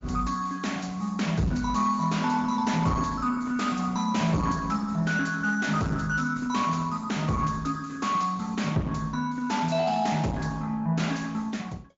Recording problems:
treble cut off; nothing above 7.3 kHz
lossy compression; Opus, log-spectral distance 4 dB
distorted audio; soft clipping, signal-to-distortion ratio 12 dB

